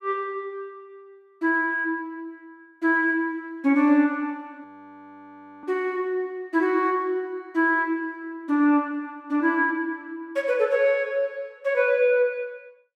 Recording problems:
audio freezing; at 4.5 s for 1 s

